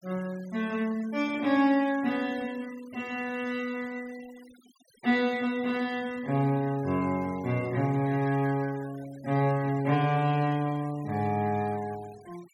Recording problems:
noise reduction artefacts; signal-to-artefact ratio 21 dB

